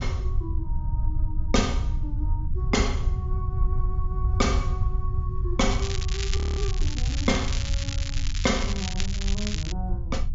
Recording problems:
low-pass filter; nothing above 7.2 kHz
low-frequency rumble; below 82 Hz, SNR -2 dB
crackling; from 5.5 to 9.5 s; loose cable, SNR 4 dB
frozen audio; at 6.5 s

